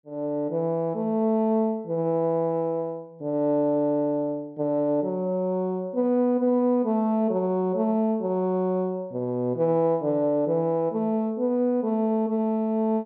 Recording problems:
none

